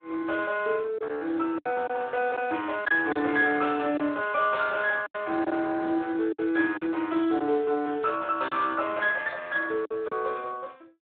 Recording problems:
telephone audio; 260 Hz to 3.5 kHz, Speex
packet loss; 5% of the sound replaced, filled with silence

